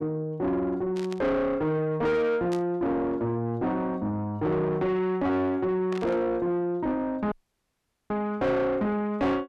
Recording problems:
distorted audio; soft clipping, signal-to-distortion ratio 7 dB
static burst; at 1 s, at 2.5 s and at 6 s; peak -10 dB vs average level
audio cutting out; at 7.5 s for 1 s

